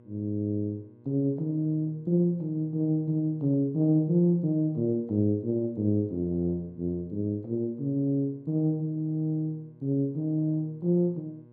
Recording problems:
hum; 60 Hz, harmonics up to 1.1 kHz, SNR 26 dB

